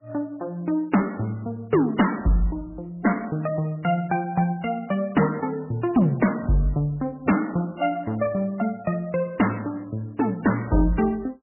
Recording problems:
lossy compression; MP3, log-spectral distance 4 dB, nothing above 2.9 kHz
distorted audio; hard clipping, uneven, signal-to-distortion ratio 11 dB

